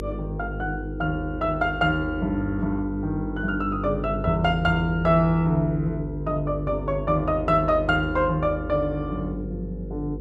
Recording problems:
hum; 50 Hz, harmonics up to 500 Hz, SNR 9 dB

